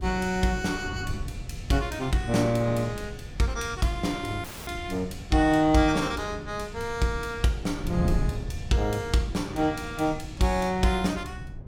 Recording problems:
wind on the microphone; below 140 Hz, SNR 11 dB
dropout; at 4.5 s

